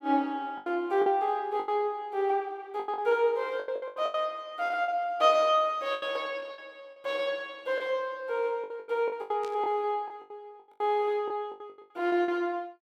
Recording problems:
packet loss; 13% of the sound replaced, filled with the last packet
burst of static; at 9.5 s; peak -13 dB vs average level

